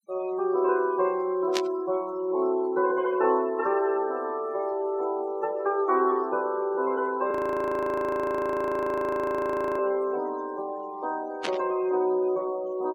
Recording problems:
noise reduction artefacts; signal-to-artefact ratio 21 dB
static burst; at 1.5 s and at 11 s; peak +1 dB vs average level
audio freezing; at 7.5 s for 2.5 s

